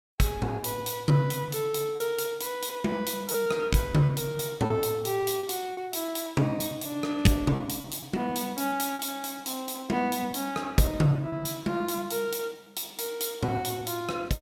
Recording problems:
packet loss; 9% of the sound replaced, filled with repeated pitch periods

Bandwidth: 16.5 kHz